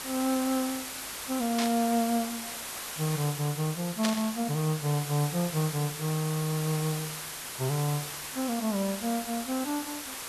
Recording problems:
background hiss; slope 0 dB per octave, SNR 6 dB
burst of static; at 1.5 s and at 4 s; peak +4 dB vs average level

